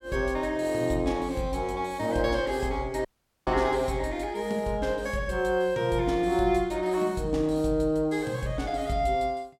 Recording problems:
audio cutting out; at 3 s

